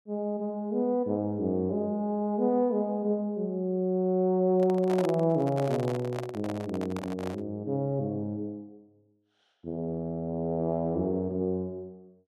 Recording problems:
handling noise; from 4.5 to 7.5 s; peak -3 dB vs average level

